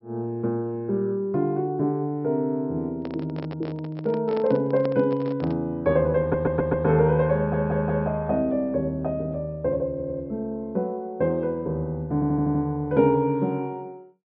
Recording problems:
treble missing; nothing above 5.4 kHz
handling noise; from 3 to 5.5 s; peak -4 dB vs average level
stutter; 4 times, first at 6 s

